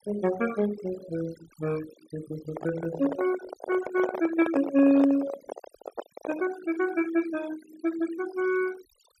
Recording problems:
denoising artefacts; signal-to-artefact ratio 15 dB
handling noise; from 2.5 to 6.5 s; peak 0 dB vs average level

